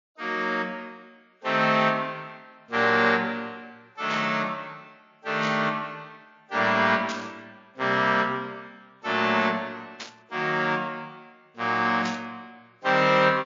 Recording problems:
codec artefacts; MP3, log-spectral distance 2 dB, nothing above 6.3 kHz
static burst; 5 times, first at 4 s; peak -5 dB vs average level

